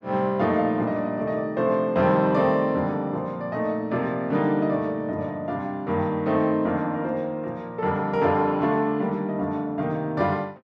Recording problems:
none

